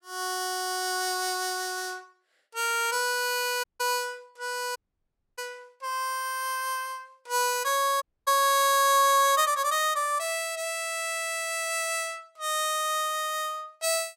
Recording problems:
audio cutting out; at 3.5 s, at 5 s for 0.5 s and at 8 s

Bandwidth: 16.5 kHz